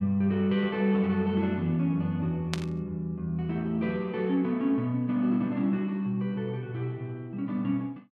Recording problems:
static burst; at 2.5 s; peak 0 dB vs average level

